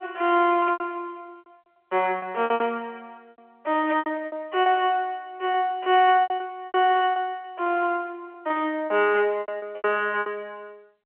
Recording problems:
phone line; 260 Hz to 3.3 kHz, G.711
packet loss; 12% of the sound replaced, filled with repeated pitch periods

